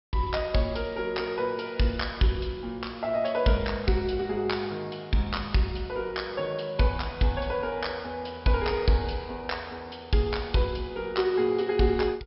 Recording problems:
treble cut off; nothing above 5.4 kHz

